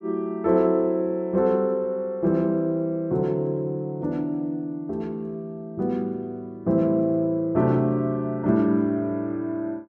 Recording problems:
none

